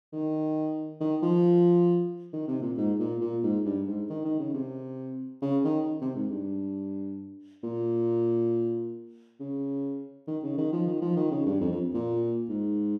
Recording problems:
none

